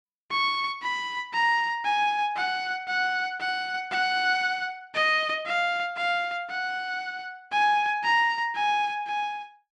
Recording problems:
none

